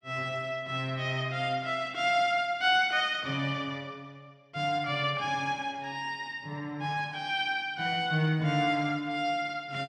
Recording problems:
none

